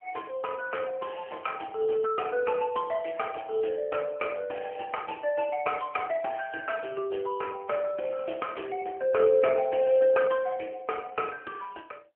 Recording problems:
phone line; 240 Hz to 3.1 kHz, AMR-NB

